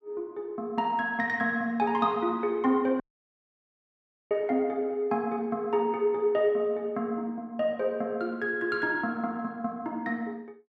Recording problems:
audio cutting out; at 3 s for 1.5 s

